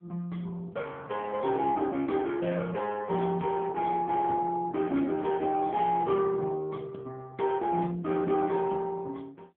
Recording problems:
telephone audio; 130 Hz to 3.4 kHz, AMR-NB

